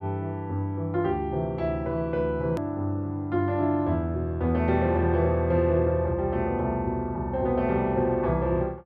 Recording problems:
edit click; at 2.5 s

